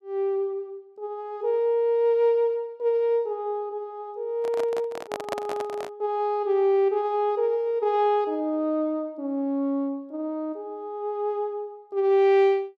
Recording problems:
microphone handling noise; from 4.5 to 6 s; peak -1 dB vs average level

